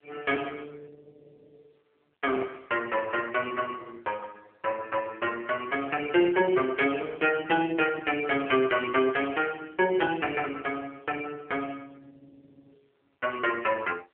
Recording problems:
phone line; 320 Hz to 3 kHz, AMR-NB

